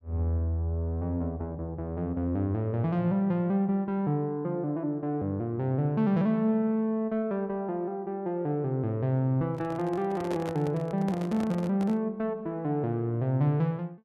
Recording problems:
microphone handling noise; from 9.5 to 12 s; peak -4 dB vs average level

